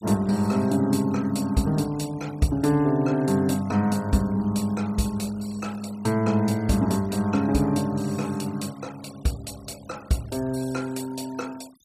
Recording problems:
noise reduction artefacts; signal-to-artefact ratio 22 dB

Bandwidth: 15 kHz